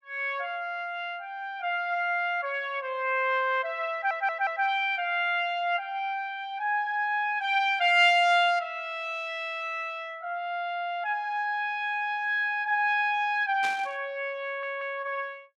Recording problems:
stutter; at 4 s and at 14 s
burst of static; at 14 s; peak -7 dB vs average level

